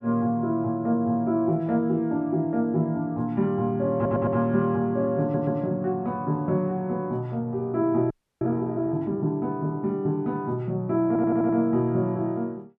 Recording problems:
audio stuttering; at 4 s, at 5 s and at 11 s
frozen audio; at 8 s

